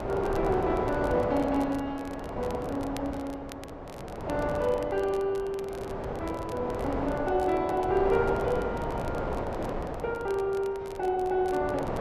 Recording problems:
wind noise; below 800 Hz, SNR 4 dB
crackling; vinyl, SNR 22 dB

